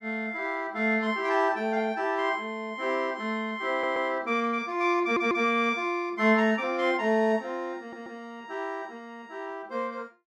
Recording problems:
audio stuttering; at 3.5 s, at 5 s and at 8 s

